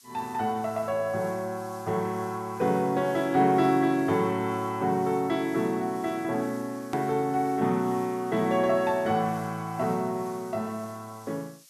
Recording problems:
background hiss; SNR 24 dB
hard cut with a click; at 7 s

